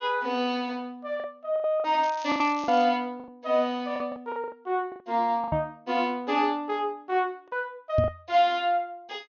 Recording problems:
treble missing; nothing above 6.7 kHz
packet loss; 9% of the sound replaced, filled with the last packet
crackling; at 2 s; loose cable, SNR 19 dB
microphone bump; at 5.5 s and at 8 s; peak +5 dB vs average level

